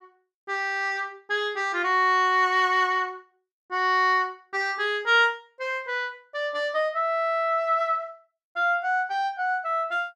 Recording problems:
none

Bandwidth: 12.5 kHz